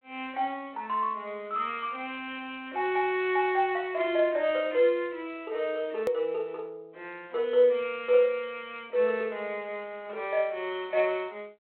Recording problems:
telephone audio; 280 Hz to 3.3 kHz, G.726
edit click; at 6 s

